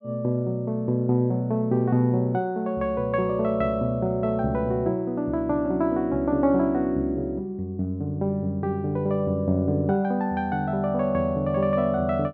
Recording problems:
none

